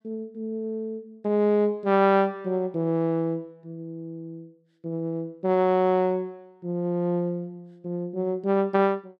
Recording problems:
none

